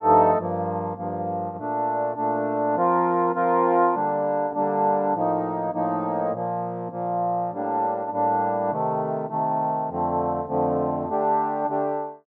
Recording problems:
none

